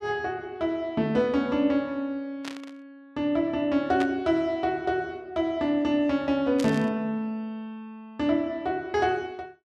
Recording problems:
burst of static; at 2.5 s, at 4 s and at 6.5 s; peak -5 dB vs average level

